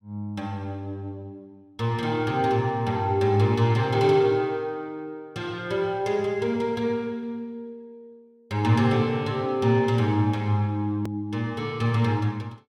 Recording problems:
click at an edit; at 11 s

